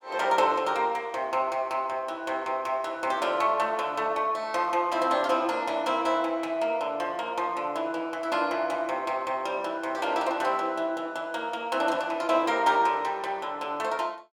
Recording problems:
none

